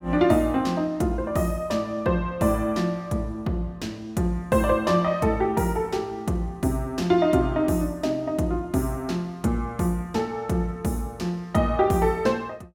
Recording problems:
none

